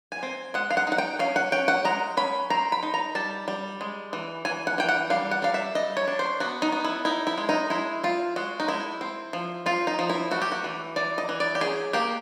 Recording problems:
none

